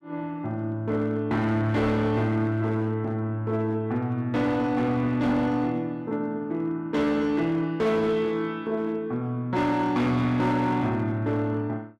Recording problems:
distorted audio; hard clipping, signal-to-distortion ratio 12 dB

